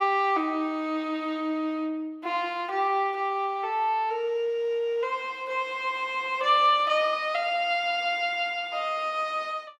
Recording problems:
none

